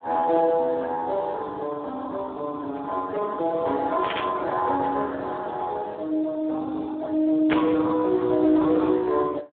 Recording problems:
telephone audio; 280 Hz to 2.2 kHz, Speex
burst of static; at 4 s and at 7.5 s; peak +1 dB vs average level

